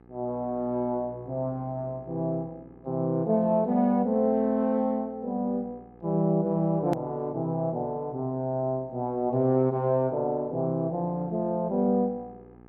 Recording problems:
mains hum; 60 Hz, harmonics up to 1.7 kHz, SNR 25 dB
click at an edit; at 7 s

